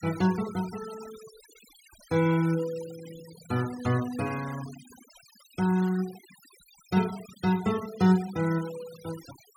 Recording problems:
noise reduction artefacts; signal-to-artefact ratio 18 dB

